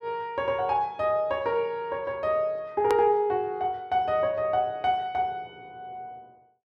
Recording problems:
hard cut with a click; at 3 s

